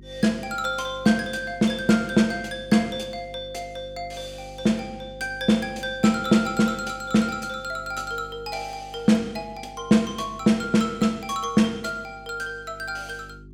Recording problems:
hum; 50 Hz, harmonics up to 400 Hz, SNR 22 dB

